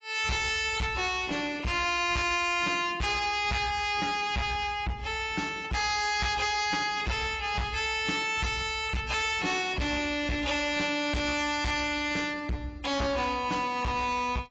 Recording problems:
lossy compression; AAC, log-spectral distance 5 dB, nothing above 7.6 kHz
distortion; hard clipping, signal-to-distortion ratio 6 dB

